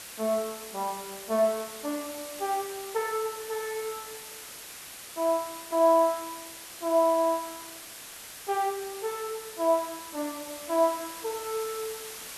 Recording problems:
hiss; slope 0 dB per octave, SNR 11 dB

